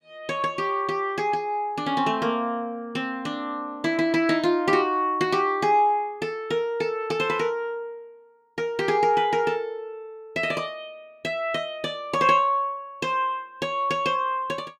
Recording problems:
none

